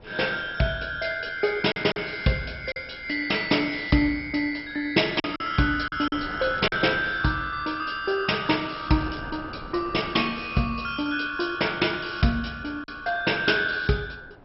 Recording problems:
lossy compression; MP2, log-spectral distance 6 dB, nothing above 5.5 kHz
wind on the microphone; below 710 Hz, SNR 21 dB
lost packets; 3% of the sound replaced, filled with silence
crackle; at 1.5 s, at 6 s and at 8.5 s; loose cable, SNR 26 dB

